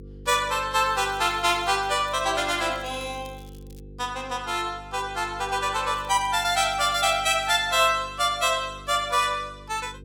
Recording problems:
mains hum; 50 Hz, harmonics up to 500 Hz, SNR 20 dB
crackling; from 1 to 4 s and from 6 to 7.5 s; loose cable, SNR 29 dB

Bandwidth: 17 kHz